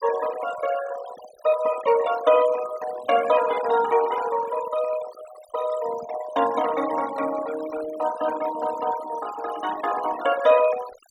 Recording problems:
noise reduction artefacts; signal-to-artefact ratio 14 dB

